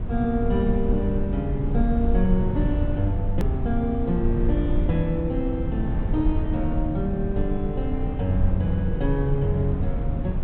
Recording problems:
low-pass filter; nothing above 4 kHz
rumble; below 96 Hz, SNR 1 dB
hard cut with a click; at 3.5 s

